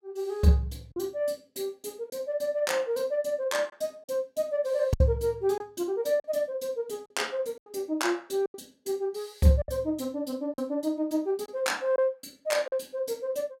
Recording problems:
lost packets; 4% of the sound replaced, filled with silence

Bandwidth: 16.5 kHz